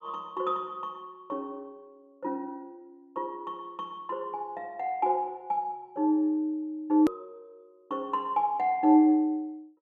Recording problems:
hard cut with a click; at 7 s

